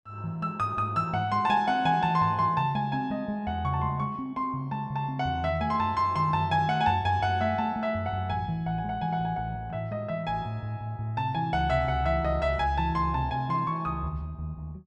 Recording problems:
none

